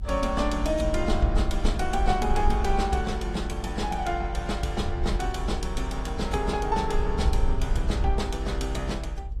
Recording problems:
lossy codec; AAC, log-spectral distance 2 dB
low-frequency rumble; below 62 Hz, SNR 2 dB

